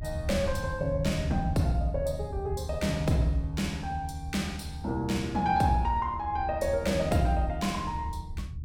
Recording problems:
low-frequency rumble; below 94 Hz, SNR 8 dB

